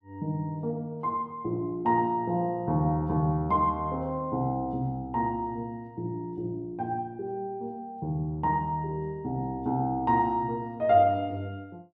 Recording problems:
none

